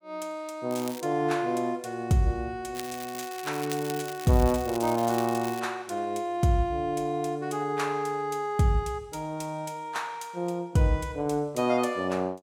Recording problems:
crackling; at 0.5 s and from 3 to 5.5 s; loose cable, SNR 13 dB

